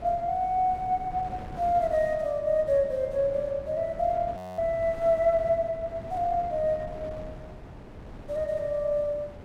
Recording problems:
wind noise; below 480 Hz, SNR 16 dB
audio freezing; at 4.5 s

